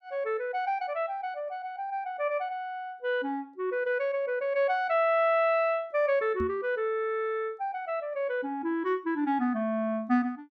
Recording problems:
knock on the microphone; at 6.5 s; peak -3 dB vs average level

